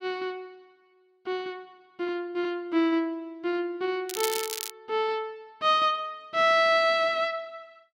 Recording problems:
crackling; at 4 s; loose cable, SNR 6 dB

